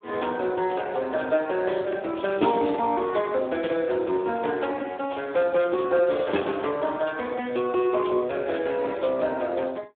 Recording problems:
phone line; 260 Hz to 3.6 kHz, Speex

